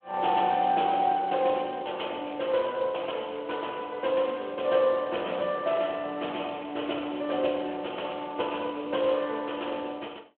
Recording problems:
telephone audio; 260 Hz to 3.3 kHz, Speex

